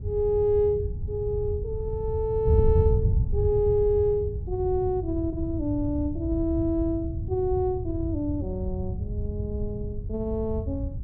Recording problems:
wind noise; below 110 Hz, SNR 3 dB

